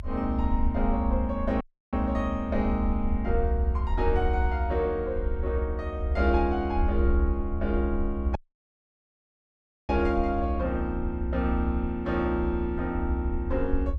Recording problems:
low-frequency rumble; below 74 Hz, strongest tone 64 Hz, SNR 2 dB
dropout; at 1.5 s and at 8.5 s for 1.5 s

